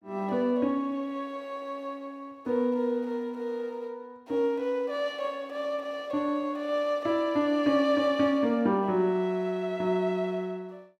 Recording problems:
none

